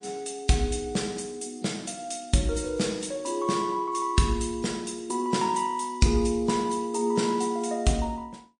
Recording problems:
lossy compression; MP3, log-spectral distance 5 dB, nothing above 9 kHz

